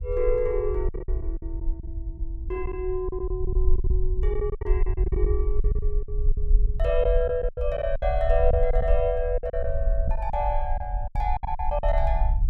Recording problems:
rumble; below 52 Hz, SNR 0 dB
lost packets; 13% of the sound replaced, filled with silence

